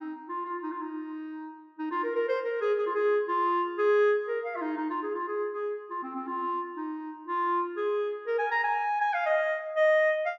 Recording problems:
none

